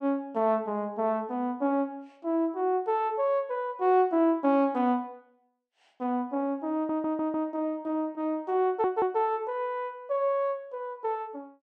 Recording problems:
audio stuttering; at 6.5 s and at 8.5 s

